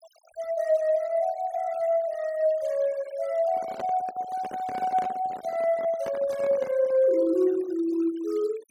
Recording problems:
noise reduction artefacts; signal-to-artefact ratio 22 dB
handling noise; from 3.5 to 7 s; peak -7 dB vs average level

